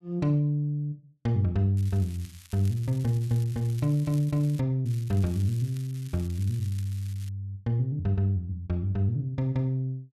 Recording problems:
crackling; from 2 to 4.5 s and from 5 to 7.5 s; loose cable, SNR 22 dB

